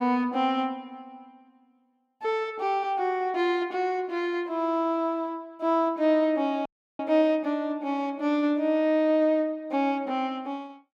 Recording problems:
audio cutting out; at 6.5 s

